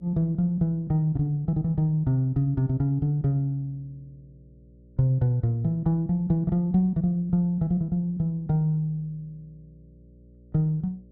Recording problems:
hum; 60 Hz, harmonics up to 600 Hz, SNR 28 dB

